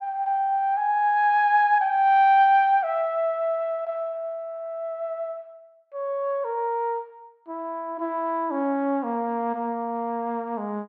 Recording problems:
none

